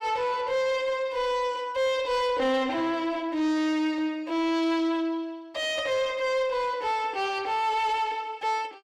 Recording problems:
distortion; soft clipping, signal-to-distortion ratio 11 dB

